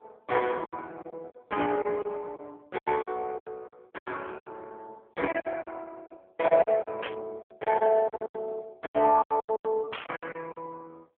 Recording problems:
phone line; 190 Hz to 3.3 kHz, AMR-NB
packet loss; 16% of the sound replaced, filled with silence
static burst; at 7 s and at 10 s; peak 0 dB vs average level

